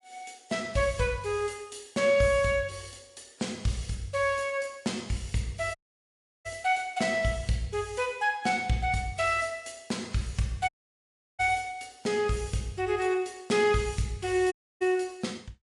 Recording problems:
lossy codec; MP3, log-spectral distance 4 dB, nothing above 11 kHz
audio cutting out; at 6 s for 0.5 s, at 11 s for 0.5 s and at 15 s

